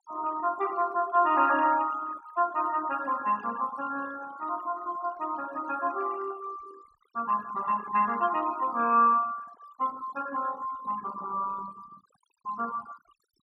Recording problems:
noise reduction artefacts; signal-to-artefact ratio 19 dB

